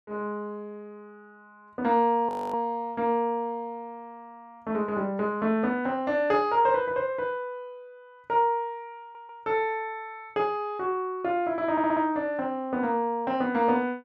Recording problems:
frozen audio; at 2.5 s
stutter; at 9 s and at 12 s

